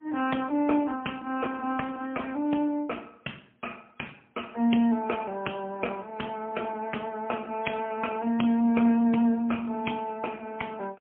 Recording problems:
telephone audio; 190 Hz to 3.1 kHz, AMR-NB, then MP3

